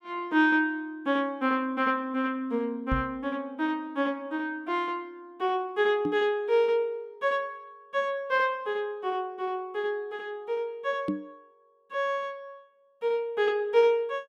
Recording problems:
microphone thump; at 3 s, at 6 s and at 11 s; peak +2 dB vs average level

